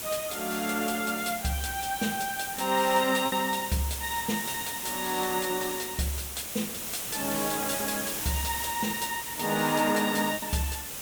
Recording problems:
background hiss; slope -1 dB per octave, SNR 4 dB
lost packets; 3% of the sound replaced, filled with repeated pitch periods

